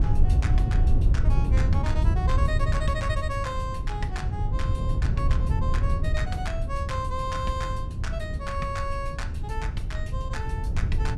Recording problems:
wind noise; below 96 Hz, SNR -7 dB

